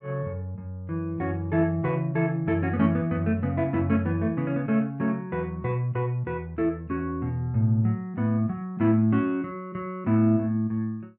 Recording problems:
none

